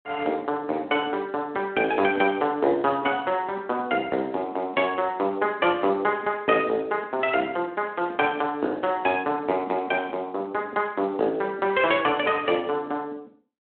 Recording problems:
telephone audio; 220 Hz to 3.3 kHz, Speex

